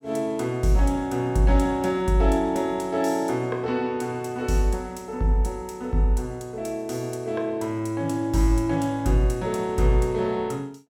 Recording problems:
none

